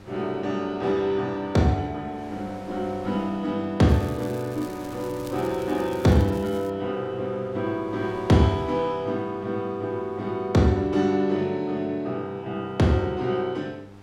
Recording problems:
hum; 50 Hz, harmonics up to 1.8 kHz, SNR 21 dB
wind noise; below 1.7 kHz, SNR 25 dB
crackle; from 4 to 6.5 s; loose cable, SNR 23 dB

